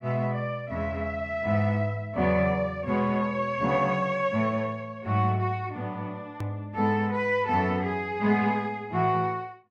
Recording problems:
click at an edit; at 6.5 s

